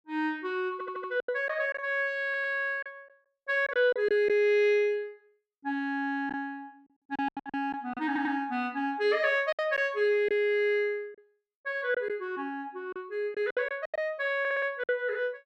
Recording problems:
packet loss; 7% of the sound replaced, filled with silence
stutter; 4 times, first at 0.5 s

